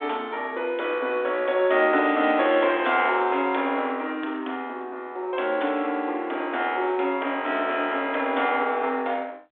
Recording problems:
telephone audio; 240 Hz to 3.6 kHz, G.726

